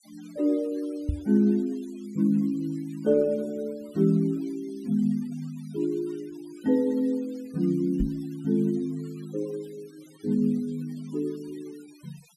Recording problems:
noise reduction artefacts; signal-to-artefact ratio 27 dB
microphone bump; at 1 s and at 8 s; peak +3 dB vs average level

